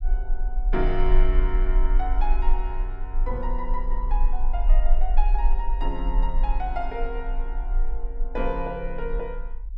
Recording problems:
rumble; below 34 Hz, strongest tone 22 Hz, SNR -5 dB

